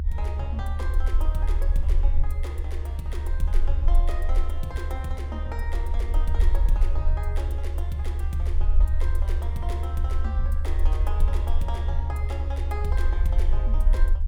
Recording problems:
rumble; below 70 Hz, SNR -10 dB

